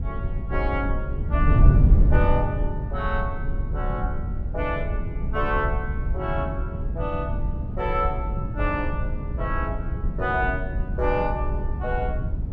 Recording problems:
wind on the microphone; below 110 Hz, SNR -3 dB

